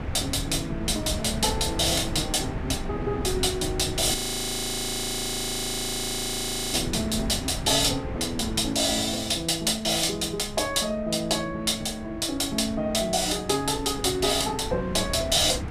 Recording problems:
wind noise; below 290 Hz, SNR 11 dB
audio freezing; at 4 s for 2.5 s

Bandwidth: 14.5 kHz